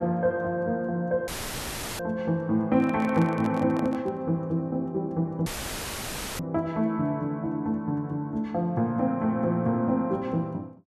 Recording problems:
dropout; at 1.5 s for 0.5 s and at 5.5 s for 1 s; filled with static
microphone handling noise; from 2.5 to 4 s; peak -6 dB vs average level

